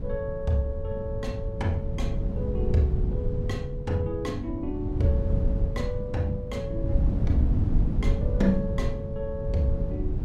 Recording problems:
wind noise; below 110 Hz, SNR 0 dB

